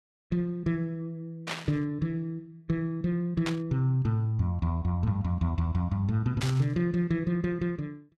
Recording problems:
static burst; at 1.5 s, at 3.5 s and at 6.5 s; peak 0 dB vs average level

